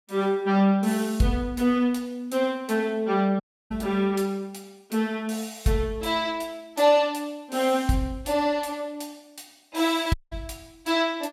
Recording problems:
audio cutting out; at 3.5 s and at 10 s

